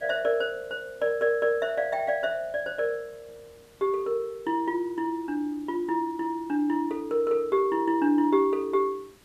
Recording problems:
hiss; slope -3 dB per octave, SNR 29 dB

